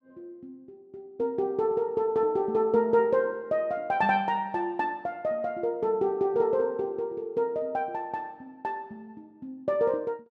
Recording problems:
none

